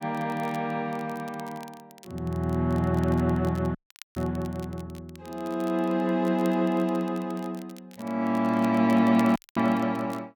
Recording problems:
crackling; vinyl, SNR 25 dB
dropout; at 4 s and at 9.5 s

